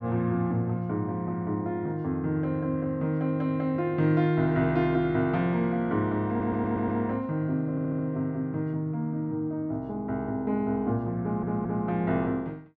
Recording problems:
audio stuttering; at 6.5 s, at 7.5 s and at 11 s

